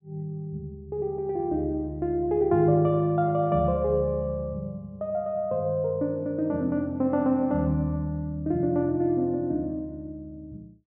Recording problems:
treble cut off; nothing above 4 kHz

